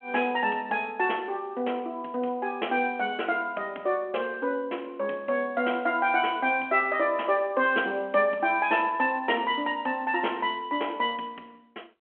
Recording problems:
phone line; 220 Hz to 3.3 kHz, G.726

